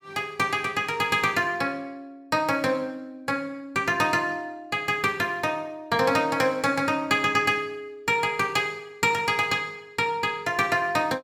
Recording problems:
none

